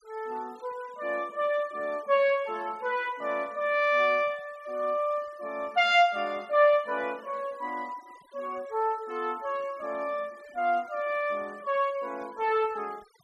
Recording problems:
noise reduction artefacts; signal-to-artefact ratio 25 dB

